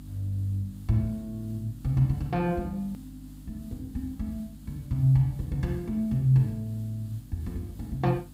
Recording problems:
hum; 50 Hz, harmonics up to 300 Hz, SNR 18 dB
background hiss; SNR 29 dB
hard cut with a click; at 3 s

